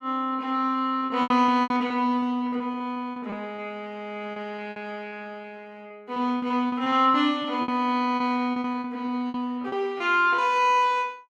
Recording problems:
packet loss; 12% of the sound replaced, filled with repeated pitch periods

